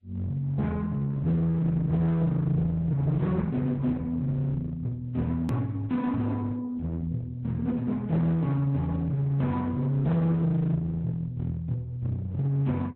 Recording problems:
lossy compression; Opus, then Vorbis, log-spectral distance 2 dB, nothing above 13.1 kHz
distortion; hard clipping, uneven, signal-to-distortion ratio 9 dB
hard cut with a click; at 5.5 s

